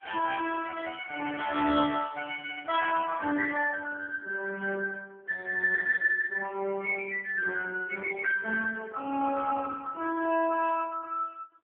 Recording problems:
telephone audio; 240 Hz to 2.9 kHz, AMR-NB

